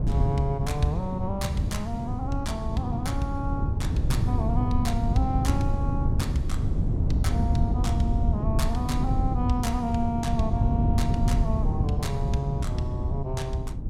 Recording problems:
wind noise; below 130 Hz, SNR -3 dB

